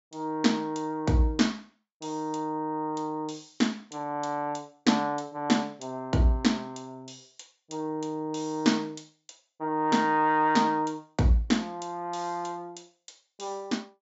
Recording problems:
low-pass filter; nothing above 8 kHz

